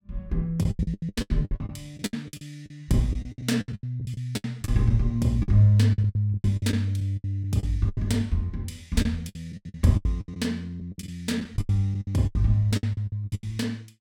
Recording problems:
packet loss; 20% of the sound replaced, filled with the last packet

